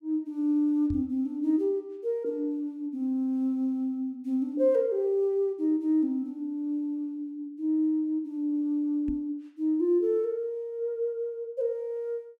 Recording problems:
microphone bump; at 1 s and at 9 s; peak -3 dB vs average level

